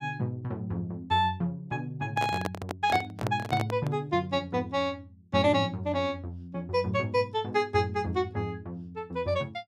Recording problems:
handling noise; from 2 to 4 s; peak +1 dB vs average level

